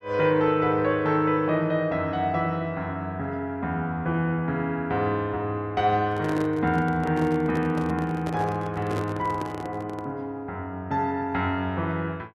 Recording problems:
microphone handling noise; from 6 to 10 s; peak -2 dB vs average level

